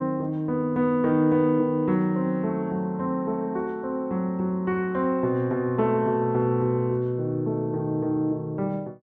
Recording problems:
none

